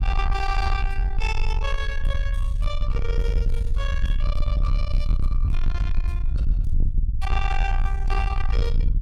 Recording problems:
distortion; soft clipping, signal-to-distortion ratio 8 dB
rumble; below 54 Hz, SNR -4 dB

